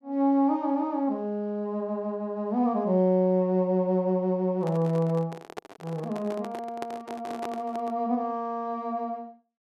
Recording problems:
handling noise; from 4.5 to 8 s; peak -5 dB vs average level

